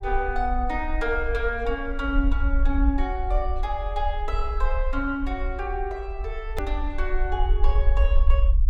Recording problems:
rumble; below 56 Hz, SNR -1 dB
edit click; at 6.5 s

